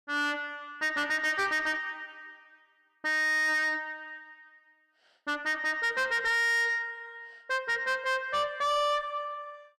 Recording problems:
distorted audio; soft clipping, signal-to-distortion ratio 6 dB

